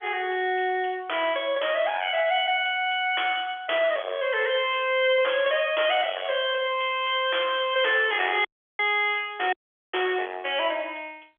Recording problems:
telephone audio; 320 Hz to 3.4 kHz, G.711
distortion; soft clipping, signal-to-distortion ratio 10 dB
audio cutting out; at 8.5 s and at 9.5 s

